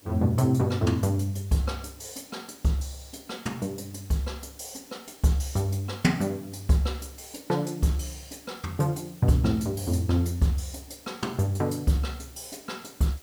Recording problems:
hiss; SNR 23 dB

